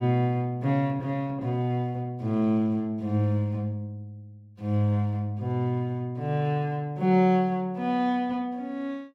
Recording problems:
none

